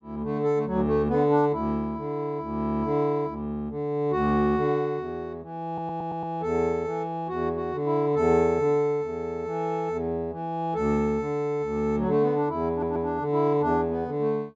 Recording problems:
audio stuttering; at 5.5 s and at 13 s

